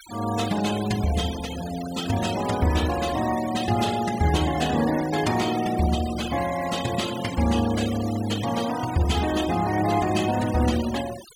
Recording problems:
noise reduction artefacts; signal-to-artefact ratio 12 dB

